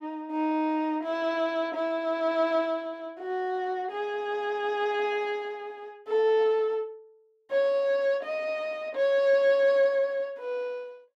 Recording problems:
none

